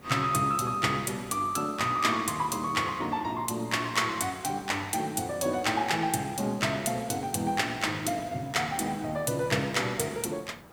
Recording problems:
background hiss; SNR 22 dB

